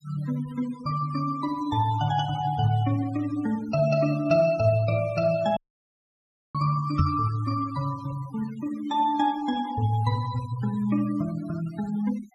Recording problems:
denoising artefacts; signal-to-artefact ratio 20 dB
dropout; at 5.5 s for 1 s
microphone thump; at 7 s; peak +8 dB vs average level

